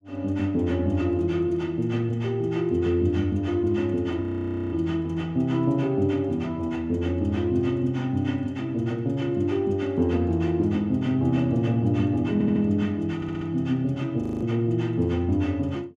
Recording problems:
audio freezing; at 4 s for 0.5 s and at 14 s
audio stuttering; at 12 s and at 13 s

